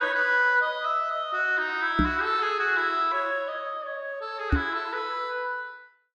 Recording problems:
microphone thump; at 2 s and at 4.5 s; peak +6 dB vs average level

